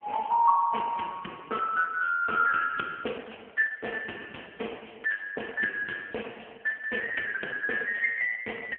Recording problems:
telephone audio; 280 Hz to 3.2 kHz, AMR-NB

